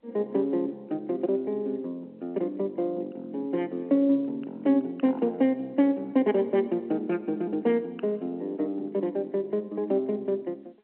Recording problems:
phone line; 240 Hz to 3.2 kHz, G.711

